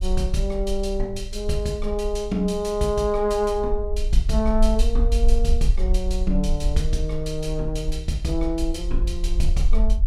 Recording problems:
rumble; below 48 Hz, strongest tone 22 Hz, SNR 1 dB

